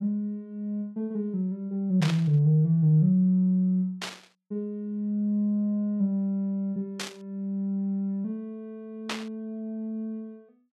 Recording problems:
static burst; 4 times, first at 2 s; peak -1 dB vs average level

